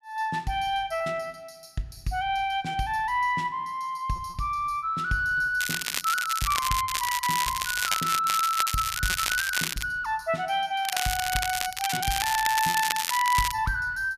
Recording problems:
lost packets; 5% of the sound replaced, filled with repeated pitch periods
crackling; from 5.5 to 10 s and from 11 to 14 s; loose cable, SNR 2 dB

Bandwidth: 14.5 kHz